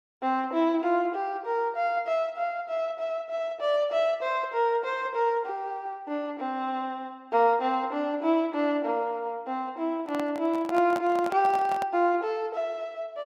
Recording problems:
microphone handling noise; from 10 to 12 s; peak -3 dB vs average level

